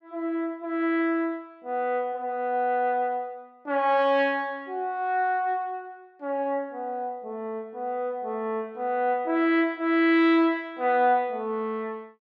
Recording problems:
none

